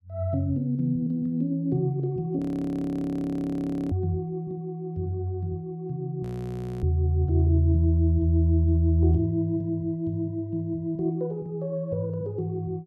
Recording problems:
frozen audio; at 2.5 s for 1.5 s and at 6 s for 0.5 s

